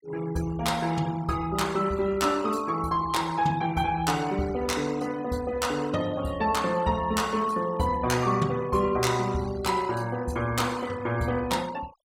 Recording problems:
denoising artefacts; signal-to-artefact ratio 19 dB

